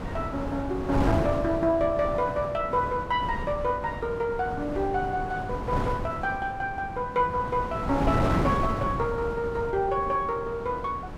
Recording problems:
wind on the microphone; below 560 Hz, SNR 5 dB

